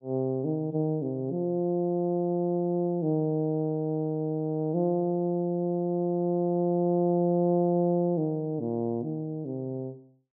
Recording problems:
none

